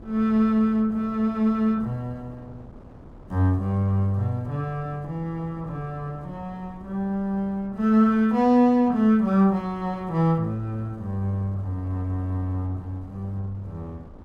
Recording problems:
wind on the microphone; below 340 Hz, SNR 22 dB

